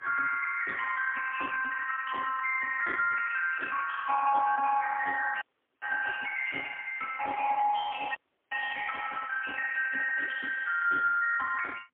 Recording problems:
telephone audio; 450 Hz to 2.2 kHz, AMR-NB, then MP3
audio freezing; at 5.5 s and at 8 s

